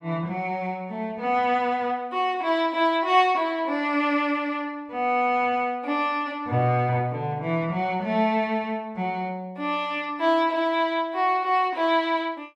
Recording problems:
none

